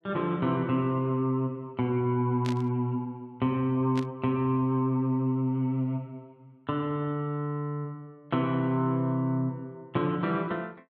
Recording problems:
static burst; at 2.5 s and at 4 s; peak -6 dB vs average level

